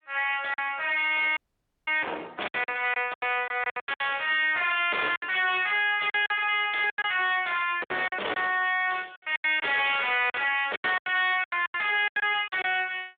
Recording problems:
phone line; 430 Hz to 3.6 kHz, Speex
distorted audio; hard clipping, signal-to-distortion ratio 4 dB
lost packets; 12% of the sound replaced, filled with silence
audio cutting out; at 1.5 s for 0.5 s

